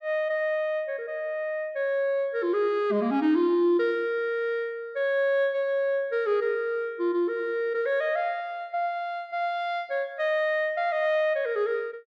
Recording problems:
none

